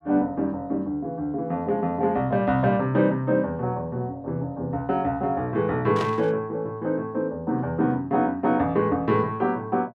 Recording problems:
static burst; at 6 s; peak -6 dB vs average level

